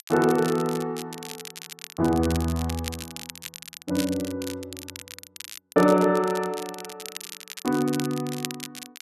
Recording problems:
crackle; vinyl, SNR 13 dB

